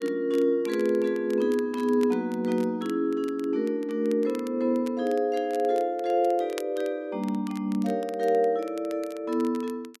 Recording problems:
crackle; vinyl, SNR 23 dB

